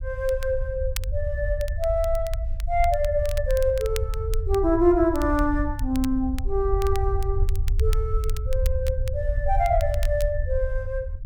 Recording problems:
low-frequency rumble; below 70 Hz, SNR 3 dB
crackling; vinyl, SNR 17 dB

